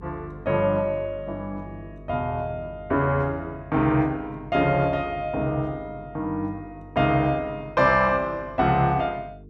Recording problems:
electrical hum; 50 Hz, harmonics up to 450 Hz, SNR 20 dB

